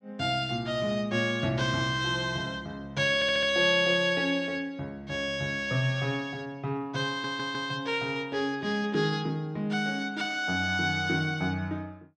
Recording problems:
audio stuttering; at 3 s and at 7 s

